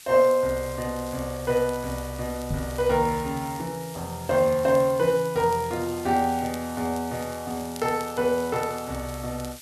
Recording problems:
background hiss; SNR 17 dB
crackle; vinyl, SNR 22 dB
knock on the microphone; at 2.5 s; peak -1 dB vs average level

